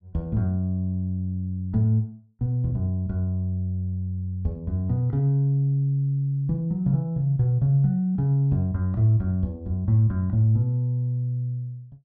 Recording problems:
none

